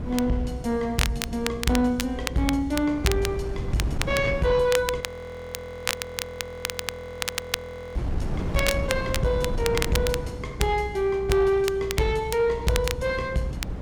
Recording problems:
distortion; soft clipping, signal-to-distortion ratio 12 dB
electrical hum; 60 Hz, harmonics up to 540 Hz, SNR 15 dB
wind noise; below 240 Hz, SNR 9 dB
crackling; vinyl, SNR 7 dB
audio freezing; at 5 s for 3 s

